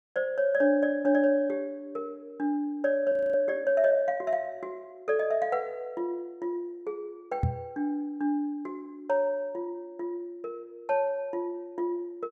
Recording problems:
frozen audio; at 3 s
knock on the microphone; at 7.5 s; peak +5 dB vs average level

